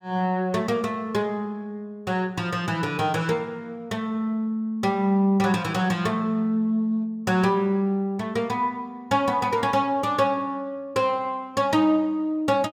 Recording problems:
none

